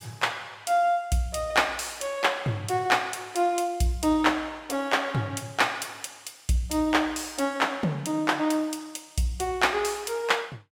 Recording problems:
none

